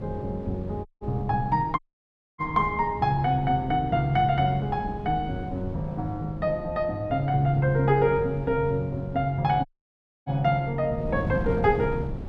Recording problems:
wind noise; below 230 Hz, SNR 11 dB
audio cutting out; at 1 s, at 2 s for 0.5 s and at 9.5 s for 0.5 s

